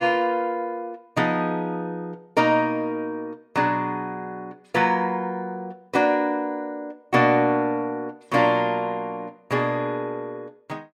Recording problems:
none

